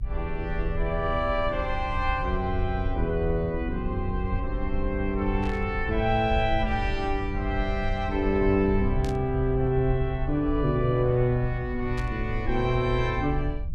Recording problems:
low-frequency rumble; below 72 Hz, SNR 6 dB
burst of static; at 5.5 s, at 9 s and at 12 s; peak -11 dB vs average level

